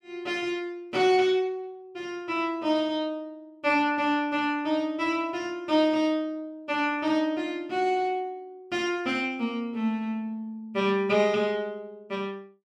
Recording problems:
none

